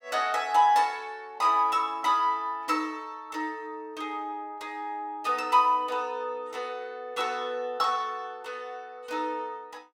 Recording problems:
none

